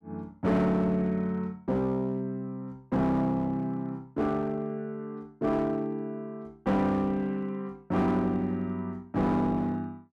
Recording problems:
distorted audio; hard clipping, uneven, signal-to-distortion ratio 10 dB

